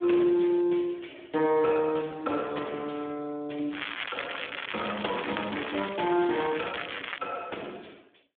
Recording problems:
telephone audio; 240 Hz to 3.5 kHz, Speex
crackle; from 3.5 to 7 s; loose cable, SNR 6 dB

